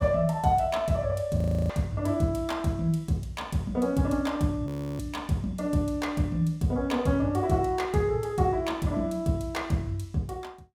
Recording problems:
frozen audio; at 1.5 s and at 4.5 s

